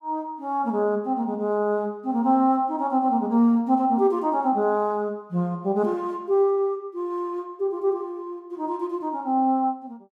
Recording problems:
none

